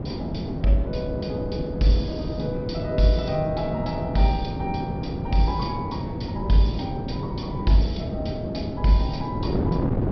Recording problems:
treble missing; nothing above 5.5 kHz
wind noise; below 350 Hz, SNR 3 dB

